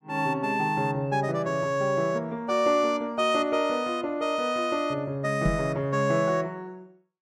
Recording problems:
knock on the microphone; at 5.5 s; peak +3 dB vs average level

